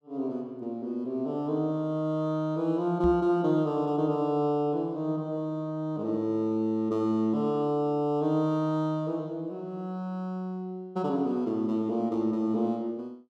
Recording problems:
microphone thump; at 3 s; peak -2 dB vs average level

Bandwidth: 13.5 kHz